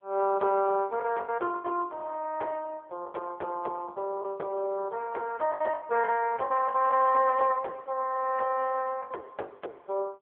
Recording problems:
telephone audio; 320 Hz to 2.3 kHz, AMR-NB
lost packets; 9% of the sound replaced, filled with the last packet

